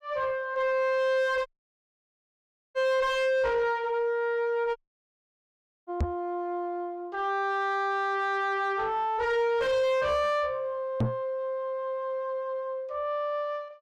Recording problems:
distorted audio; soft clipping, signal-to-distortion ratio 7 dB
dropout; at 1.5 s for 1.5 s and at 5 s for 1 s
microphone bump; at 6 s and at 11 s; peak +5 dB vs average level

